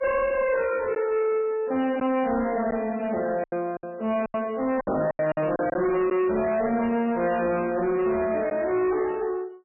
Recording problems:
codec artefacts; MP3, log-spectral distance 3 dB, nothing above 2.7 kHz
distorted audio; soft clipping, signal-to-distortion ratio 10 dB
packet loss; 5% of the sound replaced, filled with silence

